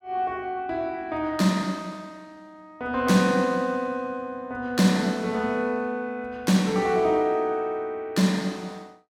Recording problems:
none

